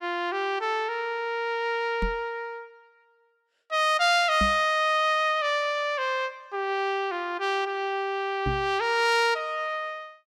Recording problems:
microphone thump; at 2 s, at 4.5 s and at 8.5 s; peak 0 dB vs average level

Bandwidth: 16.5 kHz